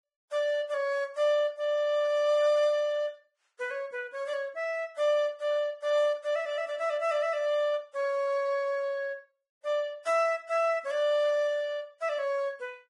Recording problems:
lossy codec; Vorbis, log-spectral distance 2 dB, nothing above 10.7 kHz

